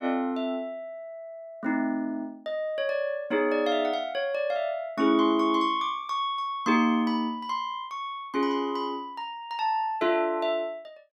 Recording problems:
none

